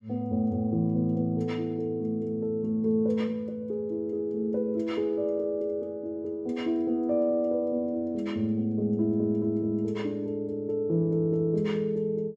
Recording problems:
none

